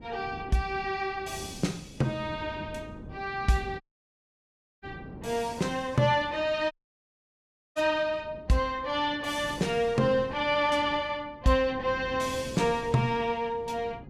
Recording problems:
wind noise; below 330 Hz, SNR 17 dB
audio cutting out; at 4 s for 1 s and at 6.5 s for 1 s

